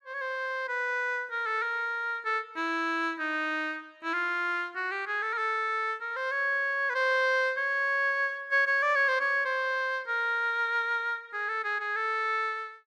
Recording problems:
none

